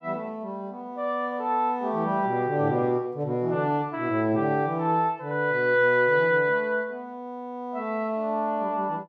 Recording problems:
none

